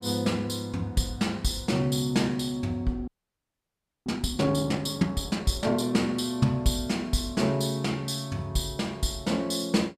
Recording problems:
audio freezing; at 3 s for 1 s

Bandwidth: 14.5 kHz